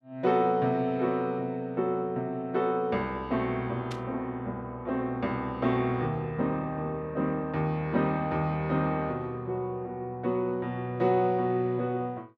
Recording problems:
static burst; at 4 s; peak -8 dB vs average level

